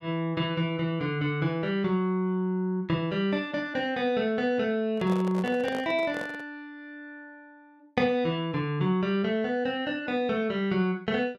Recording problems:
microphone handling noise; from 5 to 6.5 s; peak -4 dB vs average level

